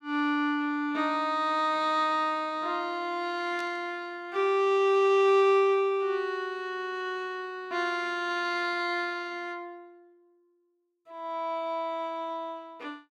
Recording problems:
burst of static; at 3.5 s; peak -13 dB vs average level

